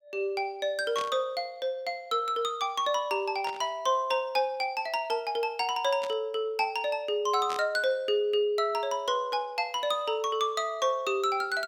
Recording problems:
burst of static; 4 times, first at 1 s; peak -6 dB vs average level

